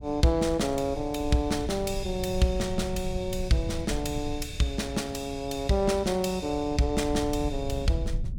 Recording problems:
low-frequency rumble; below 100 Hz, SNR 10 dB

